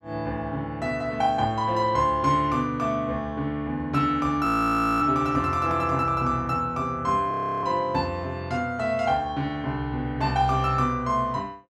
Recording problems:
frozen audio; at 4.5 s for 0.5 s and at 7.5 s

